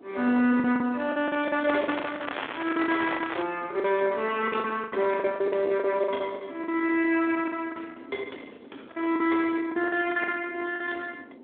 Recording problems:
telephone audio; 220 Hz to 3.6 kHz, Speex
distortion; soft clipping, signal-to-distortion ratio 14 dB
wind on the microphone; below 1.1 kHz, SNR 18 dB
packet loss; 13% of the sound replaced, filled with the last packet
crackle; from 1.5 to 3.5 s; loose cable, SNR 8 dB

